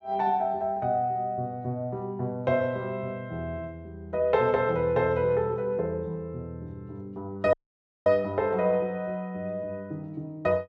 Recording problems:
dropout; at 7.5 s for 0.5 s

